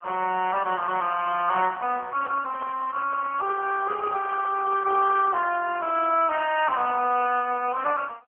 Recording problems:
phone line; 280 Hz to 3.2 kHz, AMR-NB
microphone handling noise; from 2 to 5.5 s; peak -10 dB vs average level

